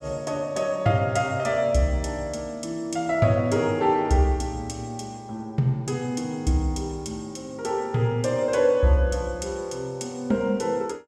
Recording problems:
none

